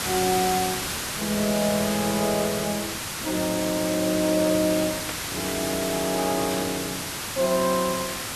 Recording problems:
background hiss; slope -1 dB per octave, SNR 3 dB
burst of static; at 1 s, at 5 s and at 6.5 s; peak -5 dB vs average level

